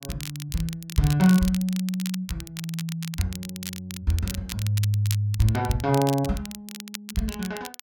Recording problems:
crackle; vinyl, SNR 12 dB

